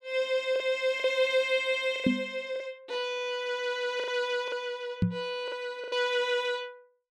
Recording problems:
lost packets; 7% of the sound replaced, filled with the last packet
knock on the microphone; at 2 s and at 5 s; peak +8 dB vs average level

